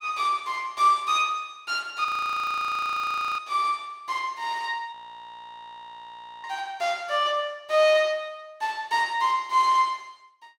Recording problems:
frozen audio; at 2 s for 1.5 s and at 5 s for 1.5 s

